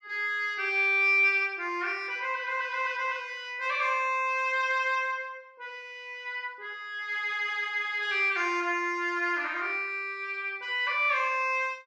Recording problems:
none

